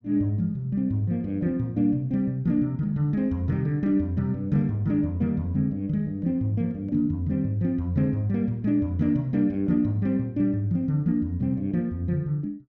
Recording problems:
none

